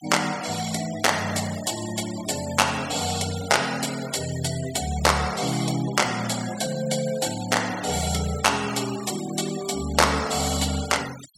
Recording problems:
noise reduction artefacts; signal-to-artefact ratio 13 dB

